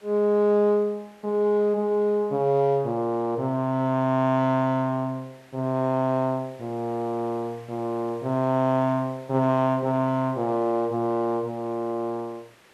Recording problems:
background hiss; SNR 28 dB

